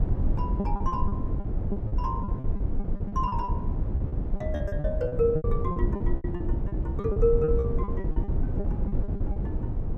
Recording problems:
low-frequency rumble; below 110 Hz, SNR -1 dB
lost packets; 18% of the sound replaced, filled with repeated pitch periods

